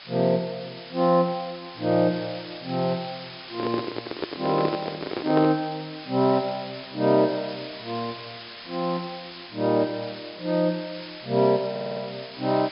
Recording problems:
low-pass filter; nothing above 5.5 kHz
background hiss; SNR 14 dB
handling noise; from 3.5 to 5.5 s; peak +2 dB vs average level
stutter; at 12 s

